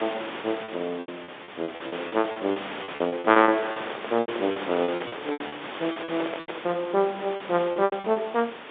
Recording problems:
phone line; 260 Hz to 3.7 kHz, G.711
background hiss; SNR 10 dB
lost packets; 18% of the sound replaced, filled with repeated pitch periods
microphone handling noise; from 3 to 7 s; peak -3 dB vs average level

